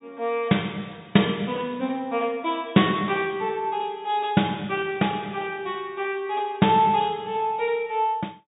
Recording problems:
low-pass filter; nothing above 4 kHz

